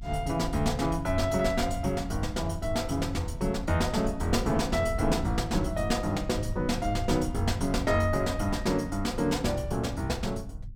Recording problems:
low-frequency rumble; below 94 Hz, SNR 9 dB

